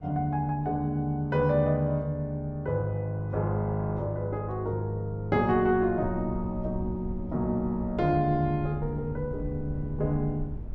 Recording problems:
rumble; below 94 Hz, SNR 13 dB

